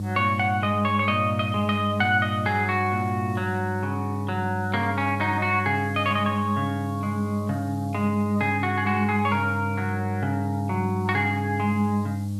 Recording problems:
electrical hum; 50 Hz, harmonics up to 500 Hz, SNR 4 dB
hiss; SNR 27 dB

